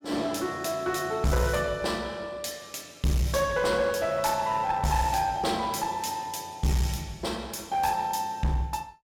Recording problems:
distortion; hard clipping, uneven, signal-to-distortion ratio 10 dB

